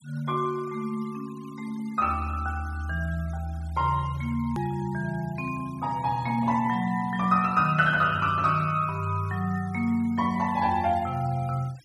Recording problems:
noise reduction artefacts; signal-to-artefact ratio 24 dB
edit click; at 4.5 s

